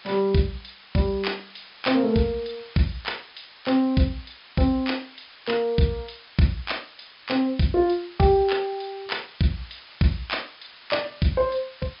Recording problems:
treble cut off; nothing above 5.5 kHz
hiss; SNR 21 dB

